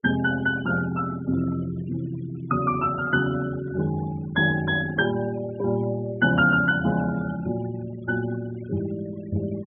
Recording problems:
treble missing; nothing above 3.5 kHz
noise reduction artefacts; signal-to-artefact ratio 17 dB

